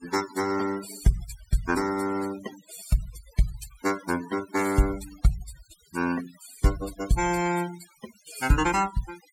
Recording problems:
denoising artefacts; signal-to-artefact ratio 13 dB

